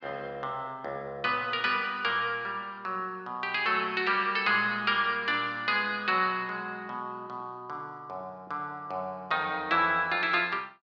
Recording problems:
none

